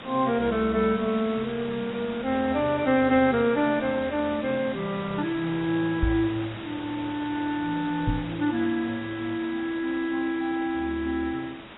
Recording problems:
lossy compression; AAC, log-spectral distance 8 dB, nothing above 3.6 kHz
hiss; SNR 14 dB
knock on the microphone; at 6 s and at 8 s; peak +4 dB vs average level

